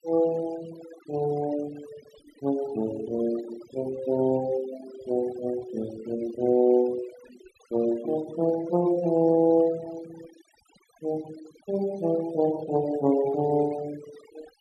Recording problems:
denoising artefacts; signal-to-artefact ratio 18 dB

